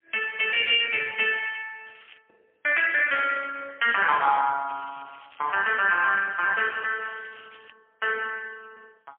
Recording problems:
phone line; 390 Hz to 3.2 kHz, AMR-NB, then MP3
crackle; at 2 s and from 4.5 to 7.5 s; loose cable, SNR 27 dB

